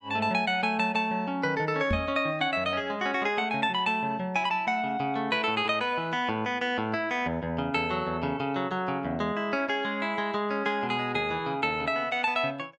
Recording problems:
microphone thump; at 2 s; peak +2 dB vs average level

